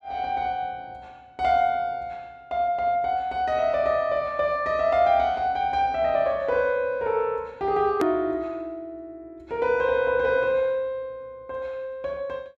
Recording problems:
click at an edit; at 8 s

